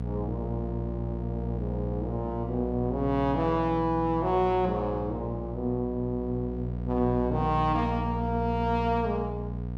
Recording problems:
hum; 60 Hz, harmonics up to 720 Hz, SNR 4 dB

